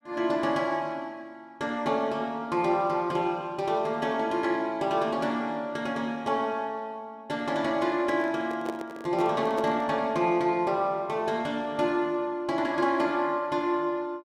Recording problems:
microphone handling noise; from 8 to 10 s; peak -3 dB vs average level

